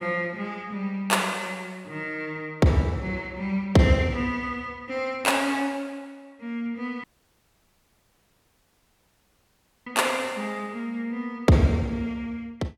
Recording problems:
audio cutting out; at 7 s for 3 s

